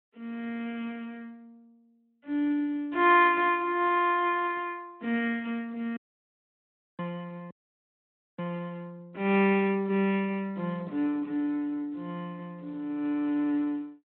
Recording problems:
telephone audio; 220 Hz to 3.5 kHz, Speex
dropout; at 6 s for 1 s and at 7.5 s for 1 s

